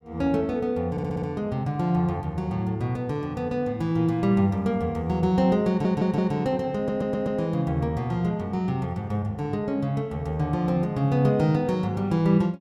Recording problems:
audio stuttering; at 1 s, at 5.5 s and at 7 s

